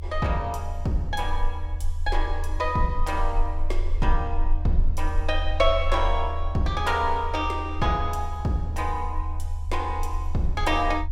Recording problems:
low-frequency rumble; below 76 Hz, strongest tone 22 Hz, SNR 3 dB

